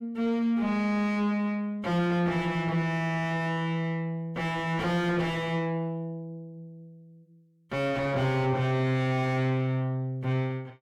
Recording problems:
distorted audio; soft clipping, signal-to-distortion ratio 6 dB

